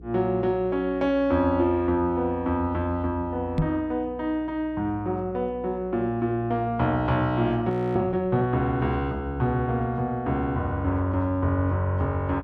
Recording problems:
hum; 60 Hz, harmonics up to 480 Hz, SNR 20 dB
knock on the microphone; at 3.5 s; peak +5 dB vs average level
frozen audio; at 7.5 s

